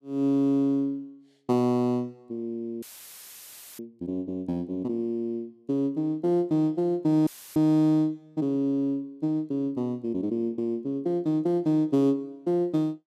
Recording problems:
dropout; at 3 s for 1 s and at 7.5 s; filled with static

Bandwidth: 14.5 kHz